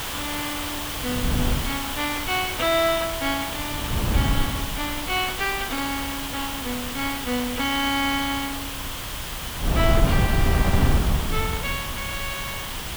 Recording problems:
background hiss; SNR 3 dB
wind noise; below 180 Hz, SNR -1 dB

